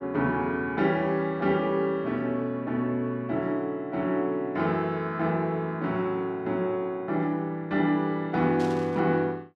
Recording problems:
static burst; at 8.5 s; peak -12 dB vs average level

